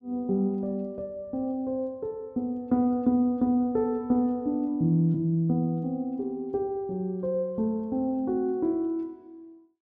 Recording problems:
none

